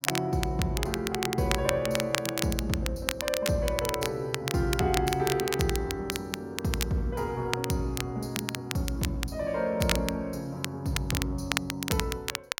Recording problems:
crackling; vinyl, SNR 4 dB

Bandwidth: 16.5 kHz